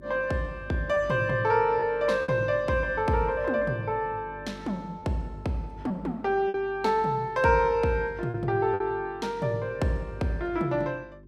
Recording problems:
hum; 50 Hz, harmonics up to 400 Hz, SNR 21 dB
lost packets; 3% of the sound replaced, filled with repeated pitch periods

